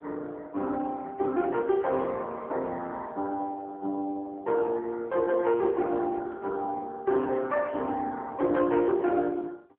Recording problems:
phone line; 260 Hz to 3.8 kHz, AMR-NB

